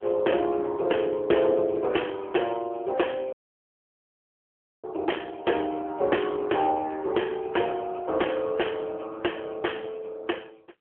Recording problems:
phone line; 300 Hz to 3.3 kHz, AMR-NB
audio cutting out; at 3.5 s for 1.5 s

